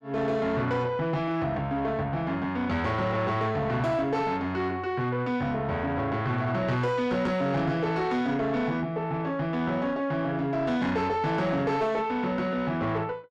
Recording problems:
distorted audio; soft clipping, signal-to-distortion ratio 11 dB

